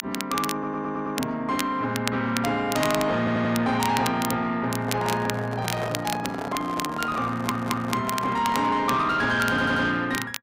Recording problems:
distorted audio; soft clipping, signal-to-distortion ratio 11 dB
crackling; vinyl, SNR 9 dB
audio stuttering; 4 times, first at 0.5 s
handling noise; from 5 to 9 s; peak -3 dB vs average level

